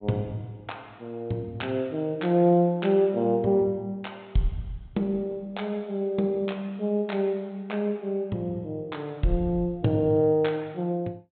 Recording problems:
low-pass filter; nothing above 4 kHz

